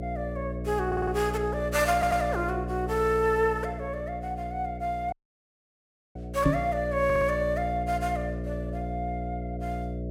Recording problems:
electrical hum; 60 Hz, harmonics up to 660 Hz, SNR 6 dB
stutter; at 1 s, at 2 s and at 7 s
audio cutting out; at 5 s for 1 s
knock on the microphone; at 6.5 s; peak +9 dB vs average level

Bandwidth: 16.5 kHz